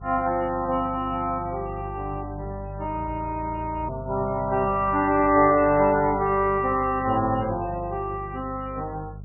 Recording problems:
codec artefacts; MP3, log-spectral distance 3 dB, nothing above 2.8 kHz
hum; 50 Hz, harmonics up to 450 Hz, SNR 13 dB
audio freezing; at 3 s for 1 s
burst of static; at 5 s; peak -15 dB vs average level

